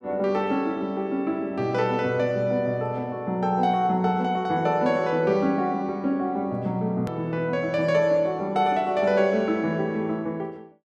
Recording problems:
hard cut with a click; at 7 s

